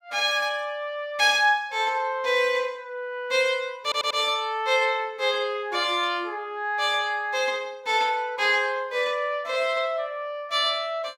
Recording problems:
stutter; at 4 s

